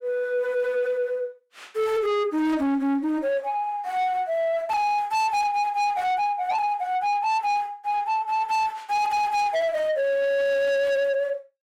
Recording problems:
distortion; soft clipping, signal-to-distortion ratio 7 dB

